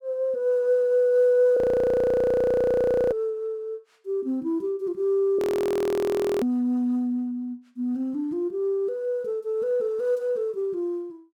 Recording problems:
audio freezing; at 1.5 s for 1.5 s and at 5.5 s for 1 s

